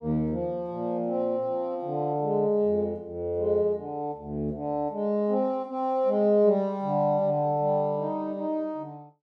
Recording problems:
none

